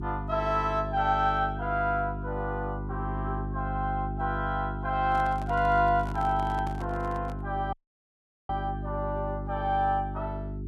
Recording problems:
hum; 50 Hz, harmonics up to 400 Hz, SNR 6 dB
microphone handling noise; from 5 to 7.5 s; peak -9 dB vs average level
dropout; at 7.5 s for 1 s

